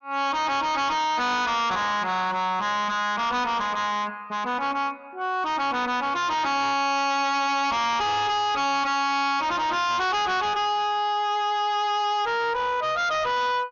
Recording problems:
treble missing; nothing above 6.8 kHz
distortion; hard clipping, uneven, signal-to-distortion ratio 5 dB

